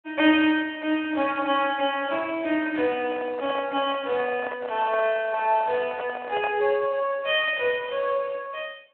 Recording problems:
telephone audio; 260 Hz to 3.3 kHz, Speex
microphone handling noise; from 3 to 6.5 s; peak -3 dB vs average level

